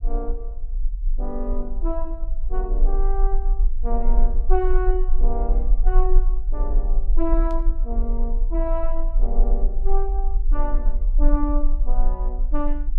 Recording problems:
low-frequency rumble; below 34 Hz, strongest tone 18 Hz, SNR -6 dB
static burst; at 7.5 s; peak -14 dB vs average level

